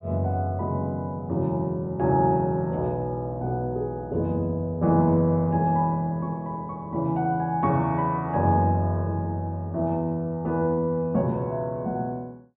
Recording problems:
treble cut off; nothing above 4 kHz

